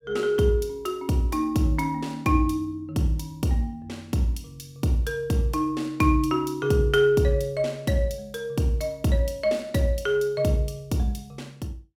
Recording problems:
none

